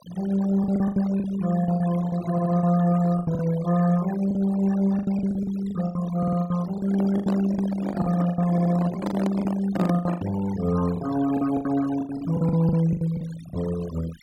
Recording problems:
denoising artefacts; signal-to-artefact ratio 16 dB
packet loss; 15% of the sound replaced, filled with the last packet
audio stuttering; at 2.5 s, at 6 s and at 8.5 s
handling noise; from 7 to 10 s; peak -1 dB vs average level

